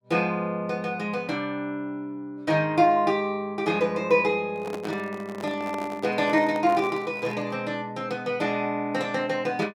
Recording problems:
microphone handling noise; from 4.5 to 7.5 s; peak -5 dB vs average level

